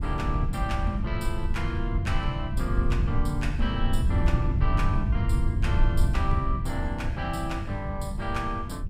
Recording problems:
low-frequency rumble; below 94 Hz, SNR -4 dB

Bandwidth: 15.5 kHz